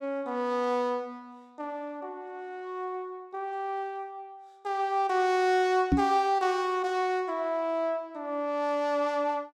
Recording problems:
knock on the microphone; at 6 s; peak +8 dB vs average level

